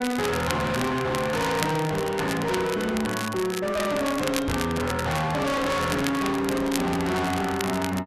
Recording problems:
distorted audio; hard clipping, signal-to-distortion ratio 6 dB
crackling; vinyl, SNR 10 dB
microphone bump; at 4.5 s; peak +1 dB vs average level

